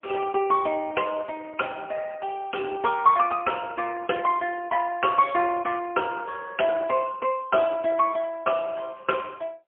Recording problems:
telephone audio; 260 Hz to 2.6 kHz, AMR-NB, then MP3

